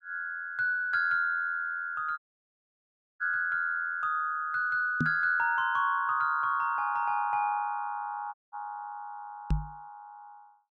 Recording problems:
audio cutting out; at 2 s for 1 s and at 8.5 s
microphone bump; at 5 s and at 9.5 s; peak +3 dB vs average level

